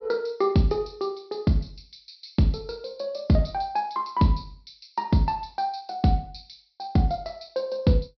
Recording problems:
treble cut off; nothing above 5.5 kHz

